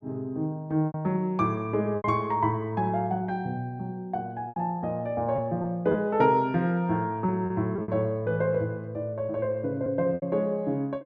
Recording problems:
lost packets; 5% of the sound replaced, filled with repeated pitch periods

